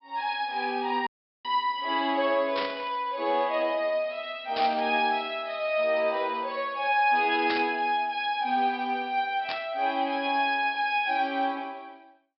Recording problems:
treble cut off; nothing above 5.3 kHz
audio cutting out; at 1 s
static burst; 4 times, first at 2.5 s; peak -1 dB vs average level

